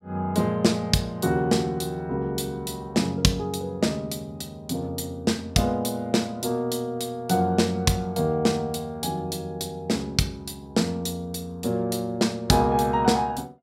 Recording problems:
none

